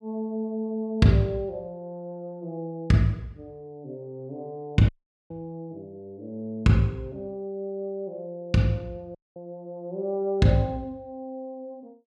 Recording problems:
audio cutting out; at 5 s and at 9 s

